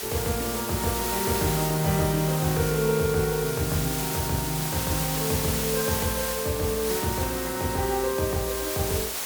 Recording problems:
background hiss; slope 0 dB per octave, SNR 2 dB

